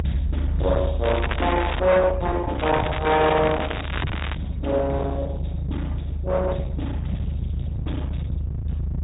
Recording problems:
treble cut off; nothing above 3.8 kHz
lossy compression; Opus, log-spectral distance 2 dB
distorted audio; hard clipping, signal-to-distortion ratio 10 dB
rumble; below 120 Hz, strongest tone 72 Hz, SNR 3 dB
crackling; at 1 s and from 2.5 to 4.5 s; loose cable, SNR 7 dB

